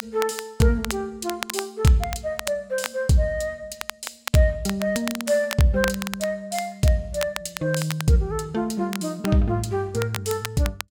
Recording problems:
crackle; vinyl, SNR 10 dB

